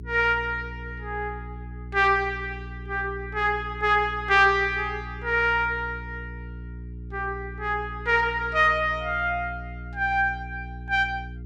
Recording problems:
hum; 60 Hz, harmonics up to 420 Hz, SNR 14 dB

